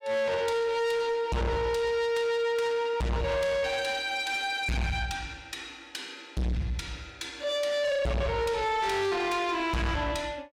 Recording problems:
distortion; soft clipping, signal-to-distortion ratio 6 dB

